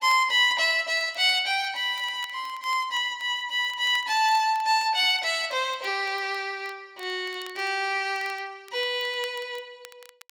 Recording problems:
crackle; vinyl, SNR 26 dB

